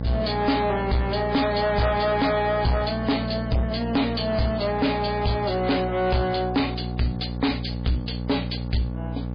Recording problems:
lossy compression; MP3, log-spectral distance 7 dB, nothing above 4.6 kHz
distortion; soft clipping, signal-to-distortion ratio 7 dB
electrical hum; 60 Hz, harmonics up to 900 Hz, SNR 6 dB

